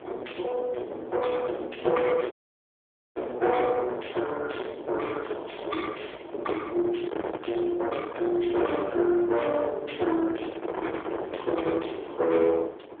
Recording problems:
telephone audio; 300 Hz to 3.4 kHz, AMR-NB
distorted audio; soft clipping, signal-to-distortion ratio 8 dB
wind on the microphone; below 820 Hz, SNR 10 dB
dropout; at 2.5 s for 1 s

